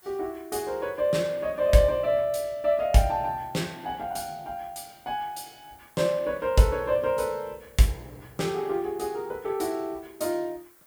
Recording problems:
hiss; SNR 28 dB

